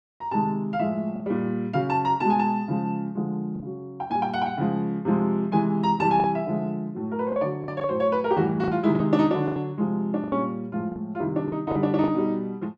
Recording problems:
lost packets; 5% of the sound replaced, filled with the last packet

